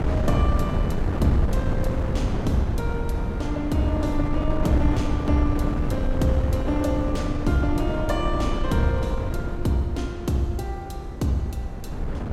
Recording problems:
wind noise; below 200 Hz, SNR 1 dB

